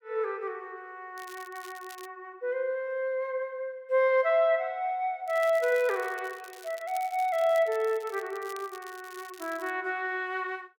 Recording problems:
crackling; at 1 s and from 5.5 to 9.5 s; loose cable, SNR 21 dB

